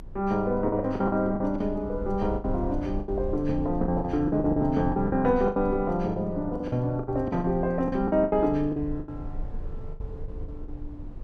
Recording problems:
low-frequency rumble; below 72 Hz, strongest tone 20 Hz, SNR 13 dB
packet loss; 14% of the sound replaced, filled with the last packet

